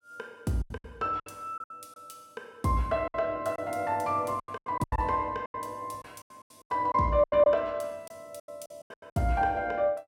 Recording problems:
lost packets; 15% of the sound replaced, filled with silence

